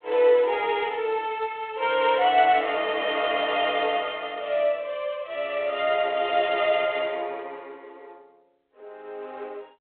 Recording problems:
phone line; 340 Hz to 3.5 kHz, G.726

